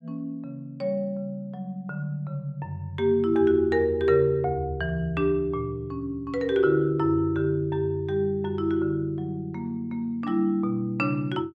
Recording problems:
none

